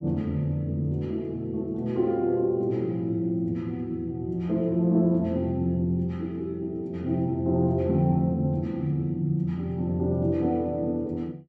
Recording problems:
none

